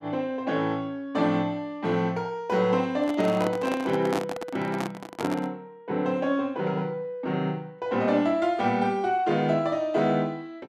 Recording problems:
handling noise; from 3 to 5.5 s; peak +1 dB vs average level

